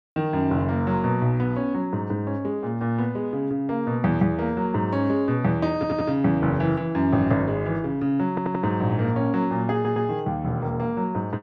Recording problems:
audio stuttering; at 6 s, at 8.5 s and at 9.5 s

